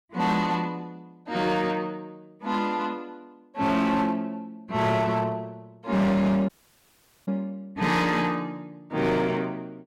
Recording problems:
distortion; hard clipping, signal-to-distortion ratio 11 dB
dropout; at 6.5 s for 1 s

